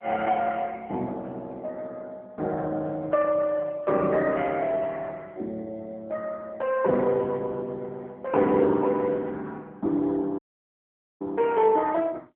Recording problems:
telephone audio; 190 Hz to 3.6 kHz, AMR-NB
audio cutting out; at 10 s for 1 s

